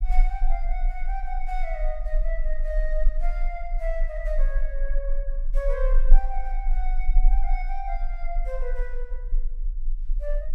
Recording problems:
low-frequency rumble; below 32 Hz, strongest tone 22 Hz, SNR -7 dB

